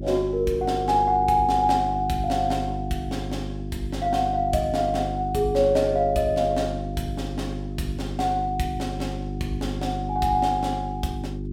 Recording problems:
hum; 50 Hz, harmonics up to 400 Hz, SNR 7 dB

